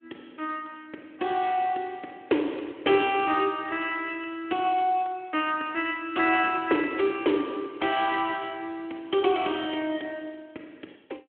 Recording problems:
telephone audio; 260 Hz to 3.3 kHz, Speex

